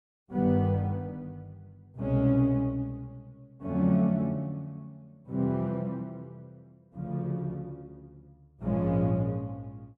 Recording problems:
none

